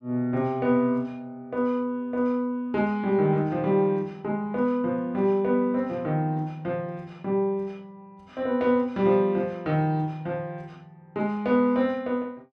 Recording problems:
none

